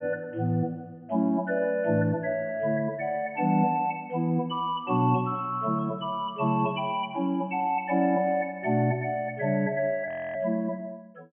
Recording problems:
audio freezing; at 10 s

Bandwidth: 3.5 kHz